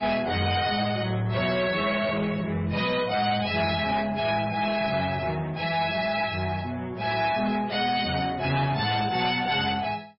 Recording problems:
lossy codec; MP3, log-spectral distance 4 dB, nothing above 5.2 kHz
distorted audio; soft clipping, signal-to-distortion ratio 10 dB

